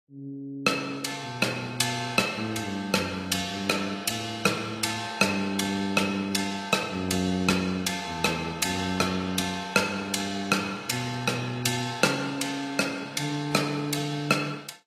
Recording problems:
codec artefacts; AAC, log-spectral distance 4 dB

